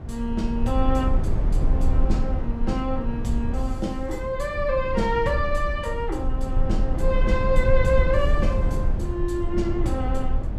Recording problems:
rumble; below 68 Hz, SNR 0 dB

